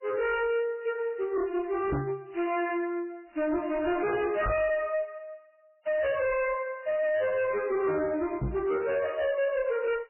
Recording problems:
lossy compression; MP3, log-spectral distance 3 dB, nothing above 2.7 kHz
distortion; hard clipping, signal-to-distortion ratio 7 dB
microphone bump; at 2 s, at 4.5 s and at 8.5 s; peak +3 dB vs average level

